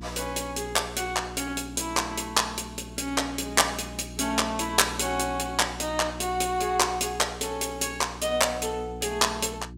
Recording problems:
hum; 60 Hz, harmonics up to 360 Hz, SNR 15 dB

